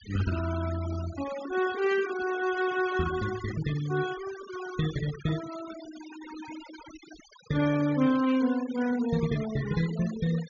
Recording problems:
treble missing; nothing above 7 kHz
noise reduction artefacts; signal-to-artefact ratio 15 dB

